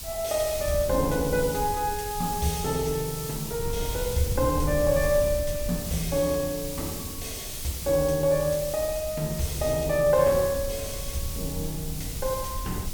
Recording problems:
background hiss; SNR 8 dB
wind noise; below 100 Hz, SNR 11 dB

